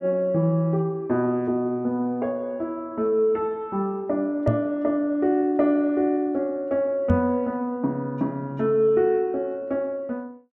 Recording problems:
microphone thump; at 4.5 s and at 7 s; peak +5 dB vs average level

